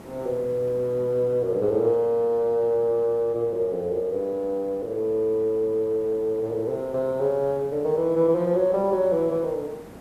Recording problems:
background hiss; slope -8 dB per octave, SNR 22 dB

